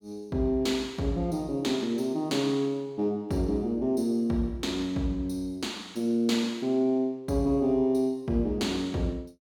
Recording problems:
none

